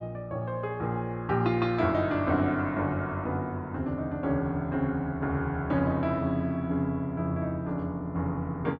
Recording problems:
none

